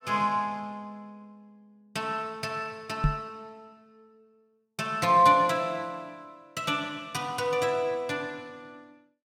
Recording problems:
knock on the microphone; at 3 s; peak +6 dB vs average level

